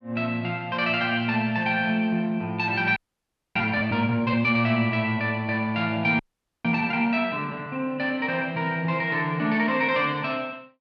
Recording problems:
audio freezing; at 3 s for 0.5 s and at 6 s

